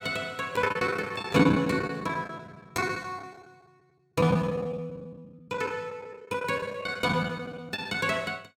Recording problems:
lost packets; 16% of the sound replaced, filled with the last packet

